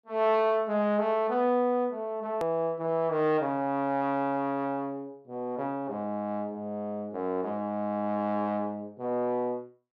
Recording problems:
hard cut with a click; at 2.5 s

